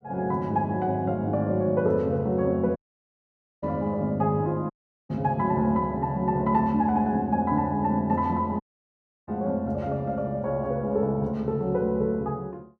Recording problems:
audio cutting out; at 3 s for 1 s, at 4.5 s and at 8.5 s for 0.5 s

